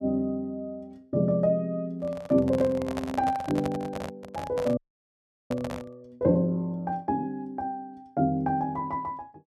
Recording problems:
handling noise; from 2 to 6 s; peak -1 dB vs average level
audio freezing; at 5 s for 0.5 s

